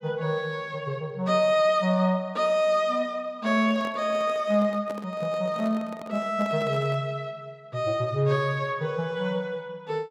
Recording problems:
microphone handling noise; from 3.5 to 7 s; peak -9 dB vs average level

